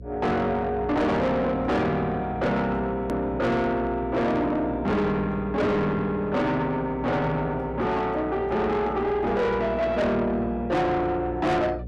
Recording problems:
distorted audio; soft clipping, signal-to-distortion ratio 8 dB
hum; 60 Hz, harmonics up to 540 Hz, SNR 14 dB
hard cut with a click; at 3 s

